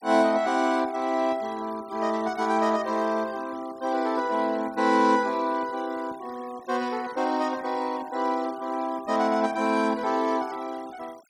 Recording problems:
denoising artefacts; signal-to-artefact ratio 22 dB

